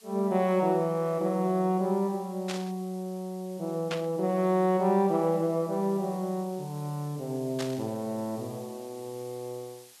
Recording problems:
background hiss; slope +2 dB per octave, SNR 23 dB
static burst; at 2.5 s, at 4 s and at 7.5 s; peak -2 dB vs average level

